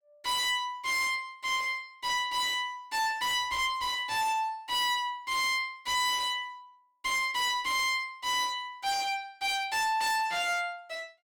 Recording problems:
distortion; hard clipping, uneven, signal-to-distortion ratio 5 dB

